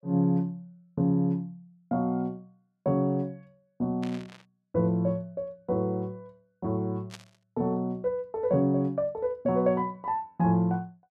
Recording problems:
static burst; at 4 s and at 7 s; peak -10 dB vs average level

